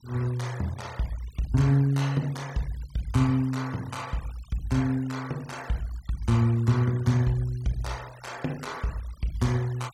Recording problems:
noise reduction artefacts; signal-to-artefact ratio 20 dB

